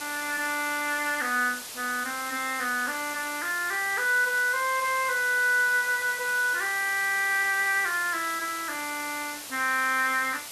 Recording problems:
hiss; slope 0 dB per octave, SNR 10 dB

